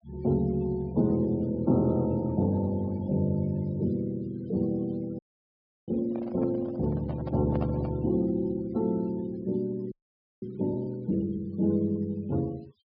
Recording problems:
treble cut off; nothing above 5.5 kHz
denoising artefacts; signal-to-artefact ratio 26 dB
audio freezing; at 5 s for 0.5 s and at 10 s for 0.5 s
microphone handling noise; from 6 to 8 s; peak -5 dB vs average level

